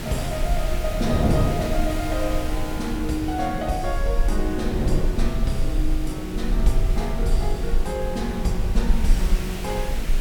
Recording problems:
background hiss; slope -2 dB per octave, SNR 10 dB
rumble; below 42 Hz, strongest tone 20 Hz, SNR 1 dB
wind on the microphone; below 300 Hz, SNR 3 dB

